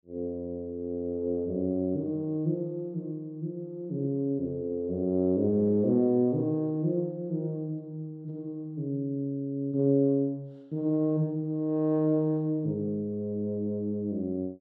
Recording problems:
none

